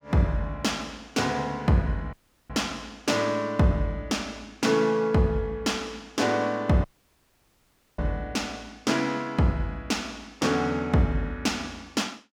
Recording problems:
audio cutting out; at 2 s and at 7 s for 1 s

